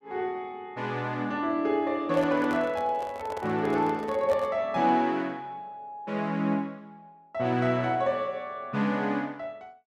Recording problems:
microphone handling noise; from 2 to 4.5 s; peak -5 dB vs average level

